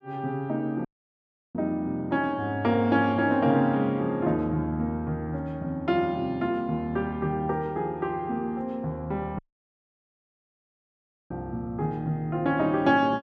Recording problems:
dropout; at 1 s for 0.5 s and at 9.5 s for 2 s

